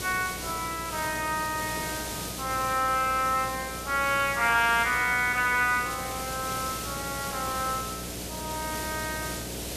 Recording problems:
mains hum; 60 Hz, harmonics up to 720 Hz, SNR 15 dB
background hiss; SNR 8 dB

